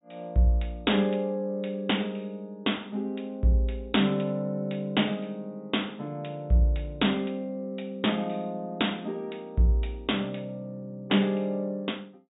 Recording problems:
treble cut off; nothing above 4 kHz

